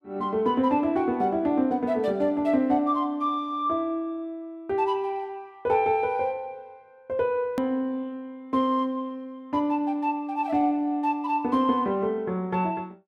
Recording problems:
click at an edit; at 7.5 s

